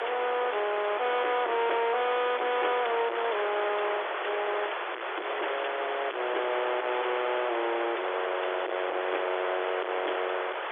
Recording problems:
telephone audio; 320 Hz to 3.5 kHz, G.711
distortion; hard clipping, uneven, signal-to-distortion ratio 6 dB
hiss; SNR 3 dB
crackle; from 0.5 to 1.5 s and from 6.5 to 9.5 s; loose cable, SNR 25 dB

